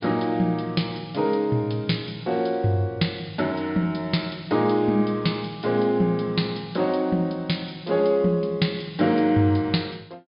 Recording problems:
treble cut off; nothing above 5.1 kHz

